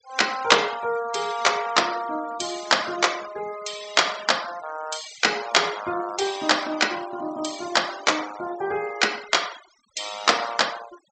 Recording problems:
treble missing; nothing above 8 kHz
noise reduction artefacts; signal-to-artefact ratio 16 dB

